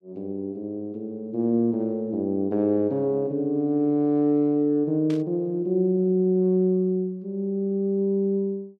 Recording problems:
burst of static; at 5 s; peak -14 dB vs average level

